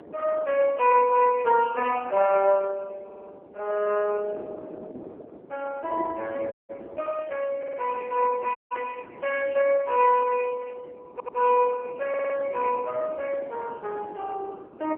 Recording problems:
phone line; 340 Hz to 2.8 kHz, AMR-NB
wind noise; below 510 Hz, SNR 19 dB
audio stuttering; 4 times, first at 3 s
dropout; at 6.5 s and at 8.5 s

